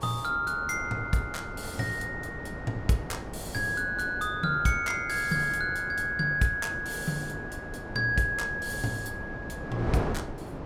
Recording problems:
wind on the microphone; below 620 Hz, SNR 9 dB

